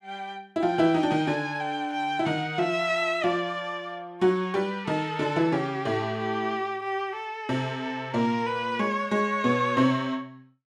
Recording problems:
none

